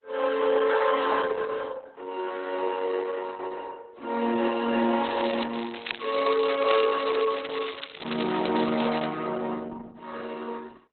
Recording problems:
lossy compression; Opus, log-spectral distance 9 dB, nothing above 4.1 kHz
crackling; at 5 s and from 5.5 to 9 s; loose cable, SNR 9 dB

